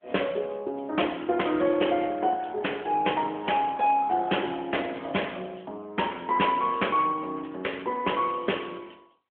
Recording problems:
telephone audio; 240 Hz to 3.4 kHz, AMR-NB

